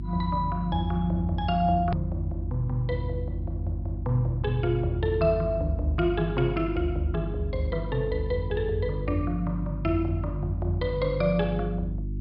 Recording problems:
treble cut off; nothing above 5.5 kHz
electrical hum; 50 Hz, harmonics up to 350 Hz, SNR 6 dB
hard cut with a click; at 2 s

